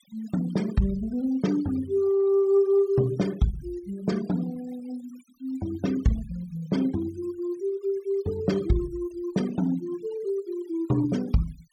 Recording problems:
noise reduction artefacts; signal-to-artefact ratio 21 dB

